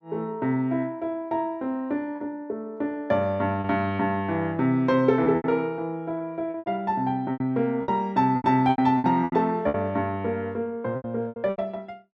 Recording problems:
lost packets; 9% of the sound replaced, filled with repeated pitch periods

